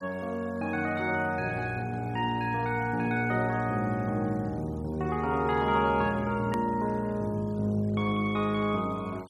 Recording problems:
noise reduction artefacts; signal-to-artefact ratio 26 dB
hard cut with a click; at 6.5 s

